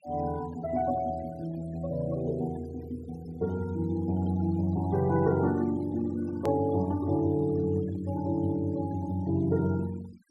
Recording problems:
noise reduction artefacts; signal-to-artefact ratio 22 dB
click at an edit; at 6.5 s

